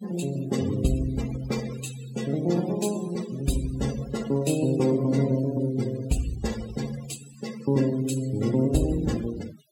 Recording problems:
noise reduction artefacts; signal-to-artefact ratio 14 dB

